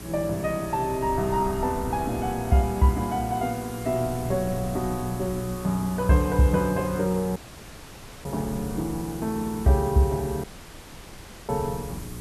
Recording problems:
hum; 60 Hz, harmonics up to 420 Hz, SNR 15 dB
hiss; slope -2 dB per octave, SNR 17 dB
wind on the microphone; below 160 Hz, SNR 16 dB
audio cutting out; at 7.5 s for 1 s and at 10 s for 1 s

